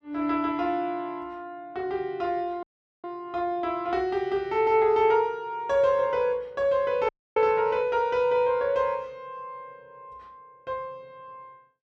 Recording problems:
audio cutting out; at 2.5 s and at 7 s

